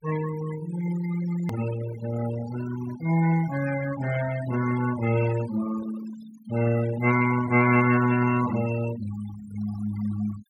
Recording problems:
denoising artefacts; signal-to-artefact ratio 13 dB
click at an edit; at 1.5 s

